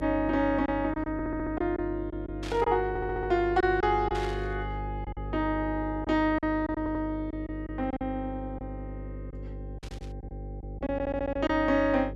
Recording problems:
hum; 50 Hz, harmonics up to 550 Hz, SNR 10 dB
lost packets; 6% of the sound replaced, filled with silence
audio stuttering; 4 times, first at 1 s
static burst; at 2.5 s, at 4 s and at 10 s; peak -8 dB vs average level

